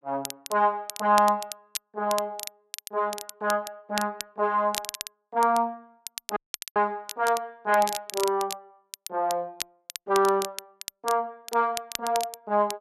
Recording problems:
crackle; vinyl, SNR 11 dB
dropout; at 6.5 s

